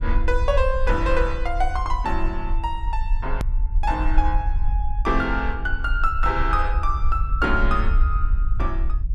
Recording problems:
low-frequency rumble; below 52 Hz, SNR 0 dB
click at an edit; at 3.5 s

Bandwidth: 12.5 kHz